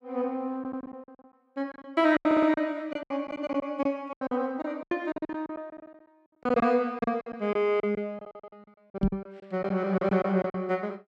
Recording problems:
packet loss; 16% of the sound replaced, filled with silence
audio stuttering; at 0.5 s, at 2.5 s and at 8.5 s
microphone bump; at 9 s; peak +5 dB vs average level

